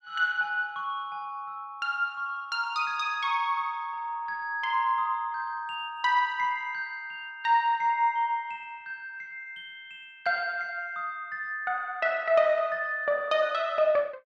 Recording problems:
none

